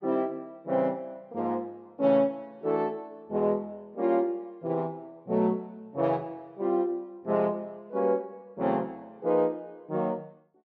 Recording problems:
none

